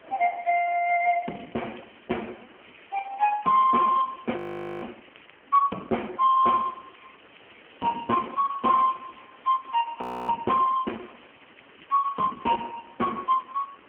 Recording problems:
phone line; 220 Hz to 3.1 kHz, AMR-NB
background hiss; SNR 27 dB
crackling; 4 times, first at 1 s; loose cable, SNR 29 dB
audio freezing; at 4.5 s and at 10 s

